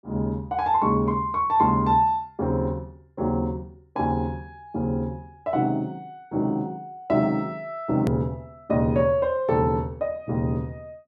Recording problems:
click at an edit; at 8 s

